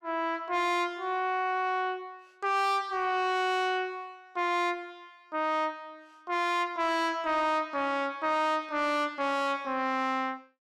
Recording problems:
distortion; soft clipping, signal-to-distortion ratio 11 dB

